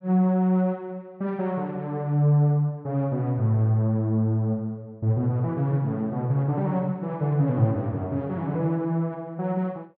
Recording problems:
none

